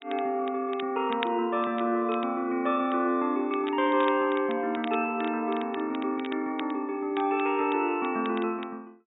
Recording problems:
treble cut off; nothing above 4 kHz
crackling; vinyl, SNR 17 dB

